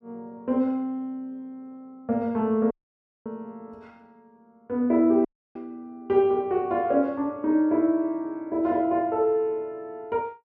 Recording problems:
dropout; at 2.5 s for 0.5 s and at 5.5 s

